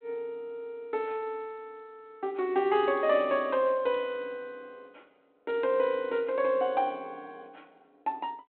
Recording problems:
phone line; 220 Hz to 3.6 kHz, G.726

